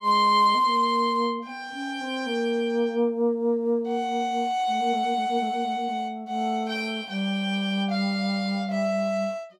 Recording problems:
none

